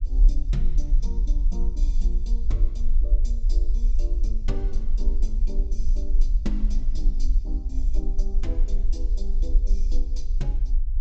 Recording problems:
low-pass filter; nothing above 8 kHz
low-frequency rumble; below 40 Hz, strongest tone 22 Hz, SNR -13 dB

